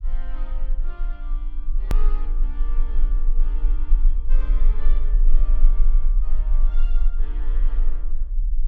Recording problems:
rumble; below 32 Hz, strongest tone 22 Hz, SNR -21 dB
edit click; at 2 s

